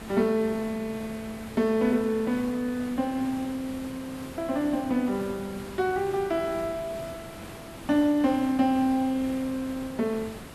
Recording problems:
hiss; slope -5 dB per octave, SNR 14 dB

